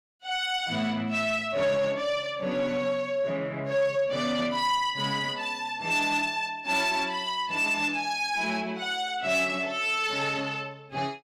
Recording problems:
distortion; soft clipping, signal-to-distortion ratio 12 dB

